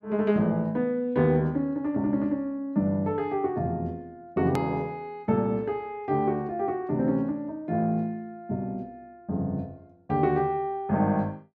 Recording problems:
hard cut with a click; at 4.5 s

